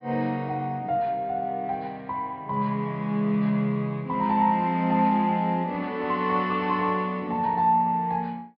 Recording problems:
treble missing; nothing above 5.5 kHz

